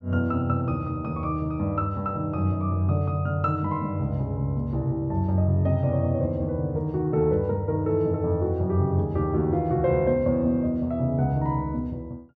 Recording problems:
none

